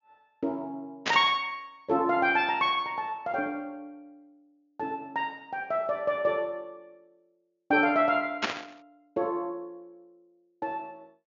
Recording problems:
treble cut off; nothing above 7.2 kHz
burst of static; at 1 s and at 8.5 s; peak +5 dB vs average level

